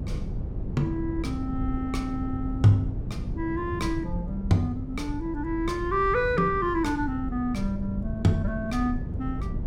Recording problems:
rumble; below 150 Hz, SNR 6 dB

